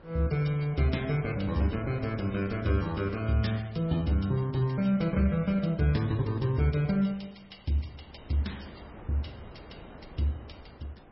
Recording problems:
lossy compression; MP3, log-spectral distance 4 dB, nothing above 5.5 kHz
wind on the microphone; below 750 Hz, SNR 21 dB

